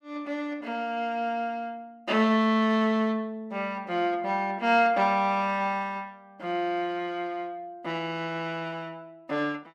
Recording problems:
none

